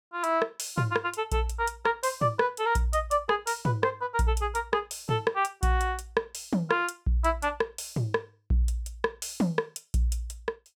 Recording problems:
none

